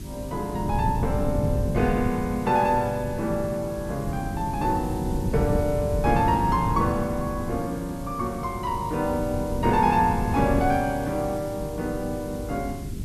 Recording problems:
hum; 50 Hz, harmonics up to 400 Hz, SNR 14 dB
hiss; slope +2 dB per octave, SNR 20 dB
wind noise; below 170 Hz, SNR 6 dB

